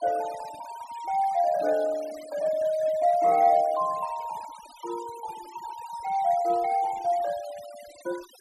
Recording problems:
denoising artefacts; signal-to-artefact ratio 21 dB

